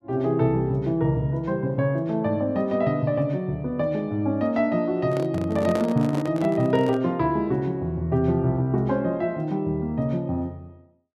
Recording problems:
microphone handling noise; from 5 to 7 s; peak -2 dB vs average level

